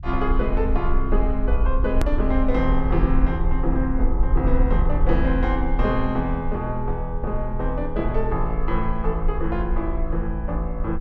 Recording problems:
rumble; below 50 Hz, strongest tone 20 Hz, SNR 1 dB
click at an edit; at 2 s

